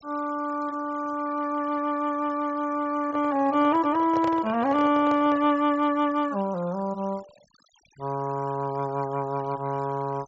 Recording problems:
treble cut off; nothing above 8 kHz
denoising artefacts; signal-to-artefact ratio 24 dB
microphone handling noise; from 3 to 5.5 s; peak -4 dB vs average level

